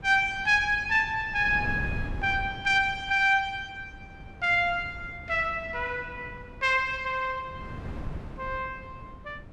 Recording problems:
wind noise; below 220 Hz, SNR 16 dB

